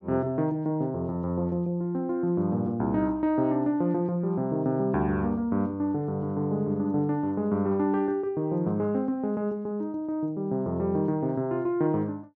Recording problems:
treble missing; nothing above 6.9 kHz

